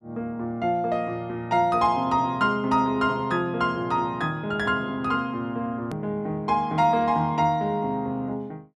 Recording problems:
edit click; at 6 s

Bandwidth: 12.5 kHz